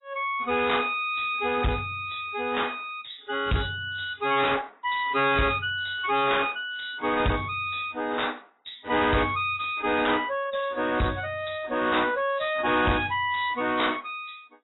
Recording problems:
lossy compression; AAC, log-spectral distance 7 dB, nothing above 3.9 kHz
distorted audio; soft clipping, signal-to-distortion ratio 8 dB

